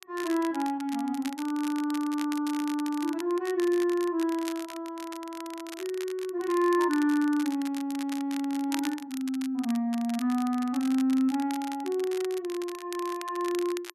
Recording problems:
crackle; vinyl, SNR 15 dB

